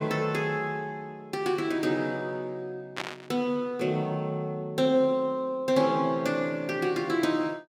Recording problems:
static burst; at 3 s; peak -1 dB vs average level

